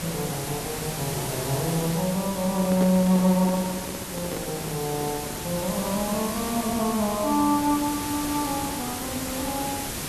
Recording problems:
background hiss; slope -3 dB per octave, SNR 5 dB
microphone handling noise; from 2.5 to 5.5 s; peak 0 dB vs average level

